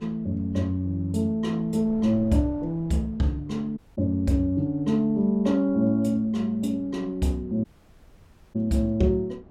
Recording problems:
wind on the microphone; below 360 Hz, SNR 24 dB
dropout; at 4 s and at 7.5 s for 1 s

